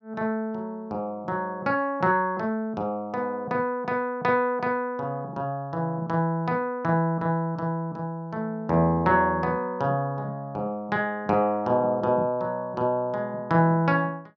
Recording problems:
none

